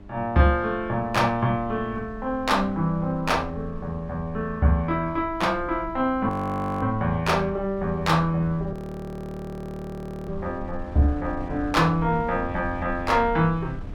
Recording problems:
hum; 50 Hz, harmonics up to 1.4 kHz, SNR 23 dB
wind on the microphone; below 92 Hz, SNR 16 dB
audio freezing; at 6.5 s for 0.5 s and at 8.5 s for 1.5 s

